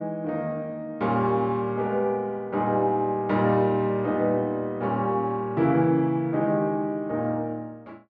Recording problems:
none

